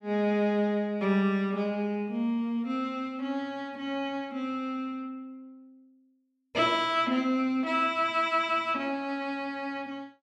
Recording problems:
none

